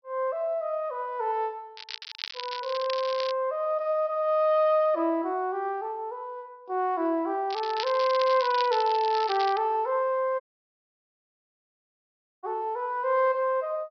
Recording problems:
treble cut off; nothing above 5.5 kHz
crackling; from 2 to 3.5 s and from 7.5 to 9.5 s; loose cable, SNR 11 dB
dropout; at 10 s for 2 s

